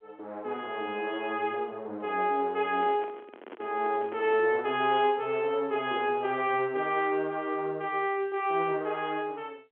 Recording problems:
telephone audio; 240 Hz to 3.5 kHz, G.711
microphone handling noise; from 2.5 to 4.5 s; peak -9 dB vs average level

